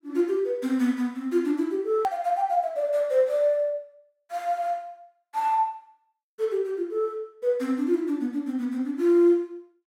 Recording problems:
click at an edit; at 2 s

